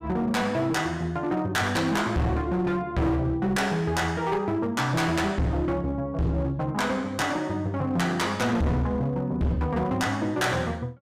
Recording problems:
distorted audio; hard clipping, signal-to-distortion ratio 6 dB

